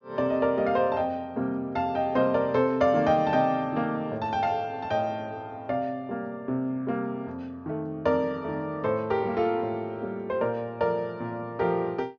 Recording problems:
treble missing; nothing above 6.8 kHz

